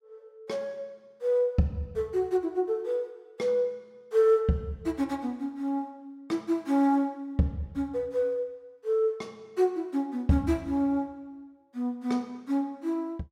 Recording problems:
none

